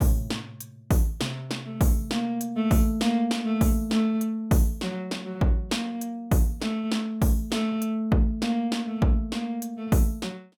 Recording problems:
none

